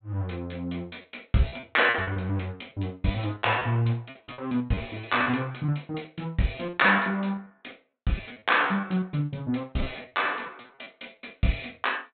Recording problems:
low-pass filter; nothing above 4 kHz
packet loss; 13% of the sound replaced, filled with repeated pitch periods

